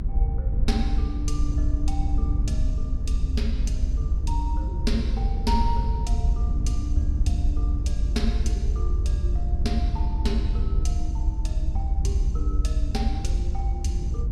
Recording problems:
rumble; below 68 Hz, SNR -7 dB

